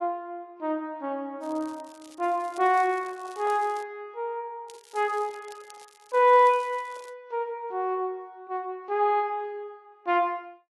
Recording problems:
codec artefacts; AAC, log-spectral distance 2 dB
crackle; from 1.5 to 4 s and from 4.5 to 7 s; loose cable, SNR 25 dB

